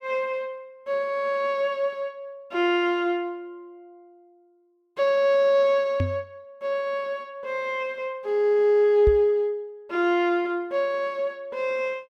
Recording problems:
knock on the microphone; at 6 s and at 9 s; peak +2 dB vs average level

